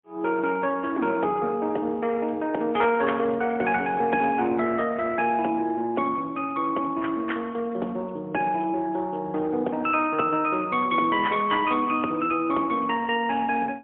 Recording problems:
telephone audio; 220 Hz to 3.3 kHz, AMR-NB, then MP3

